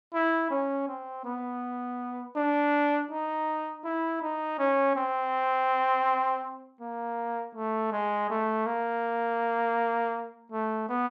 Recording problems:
none

